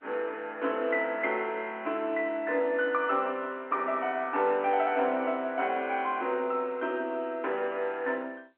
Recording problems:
telephone audio; 280 Hz to 3.3 kHz, G.711

